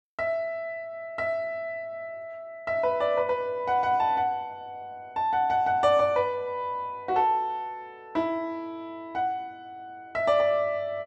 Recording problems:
none

